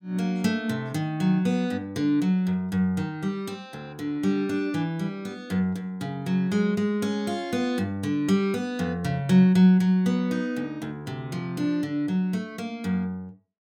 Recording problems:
none

